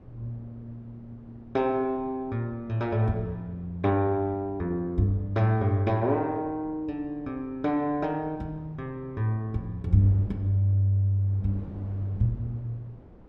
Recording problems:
wind noise; below 350 Hz, SNR 22 dB

